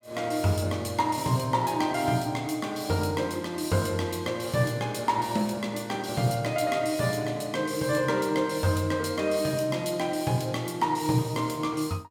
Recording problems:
none

